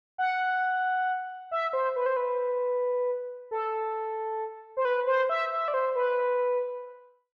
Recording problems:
none

